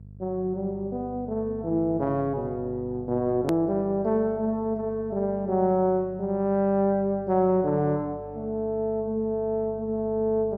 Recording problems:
hum; 50 Hz, harmonics up to 450 Hz, SNR 19 dB
click at an edit; at 3.5 s

